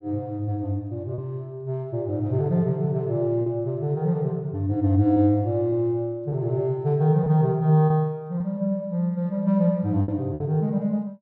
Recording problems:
lost packets; 3% of the sound replaced, filled with repeated pitch periods

